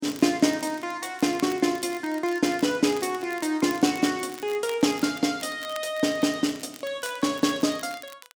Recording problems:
crackle; vinyl, SNR 20 dB

